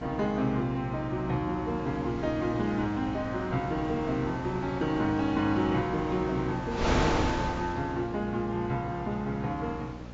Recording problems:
lossy codec; AAC, log-spectral distance 2 dB, nothing above 6 kHz
hum; 60 Hz, harmonics up to 840 Hz, SNR 12 dB
wind noise; below 1.3 kHz, SNR 7 dB

